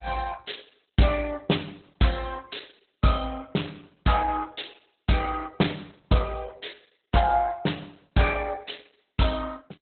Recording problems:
lossy compression; Opus, log-spectral distance 8 dB, nothing above 4 kHz

